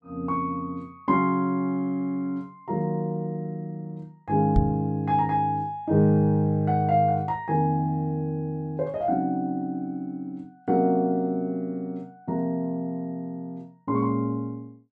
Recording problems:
knock on the microphone; at 4.5 s; peak +6 dB vs average level

